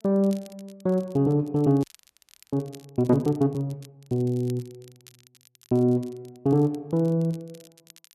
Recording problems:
crackle; vinyl, SNR 28 dB
frozen audio; at 2 s for 0.5 s

